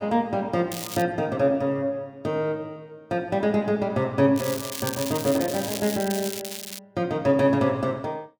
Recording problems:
crackling; at 0.5 s and from 4.5 to 7 s; loose cable, SNR 8 dB

